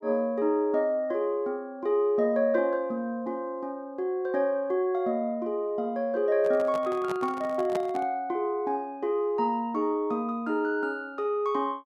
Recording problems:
microphone handling noise; from 6.5 to 8 s; peak -3 dB vs average level

